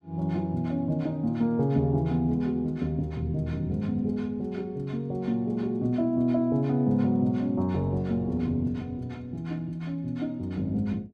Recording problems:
none

